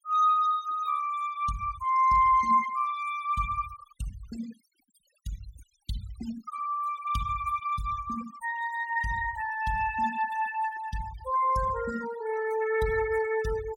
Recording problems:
denoising artefacts; signal-to-artefact ratio 15 dB

